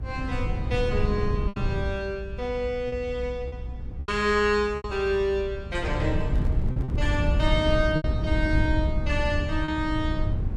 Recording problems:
low-frequency rumble; below 120 Hz, SNR 2 dB
packet loss; 4% of the sound replaced, filled with repeated pitch periods
handling noise; from 6 to 8 s; peak -11 dB vs average level

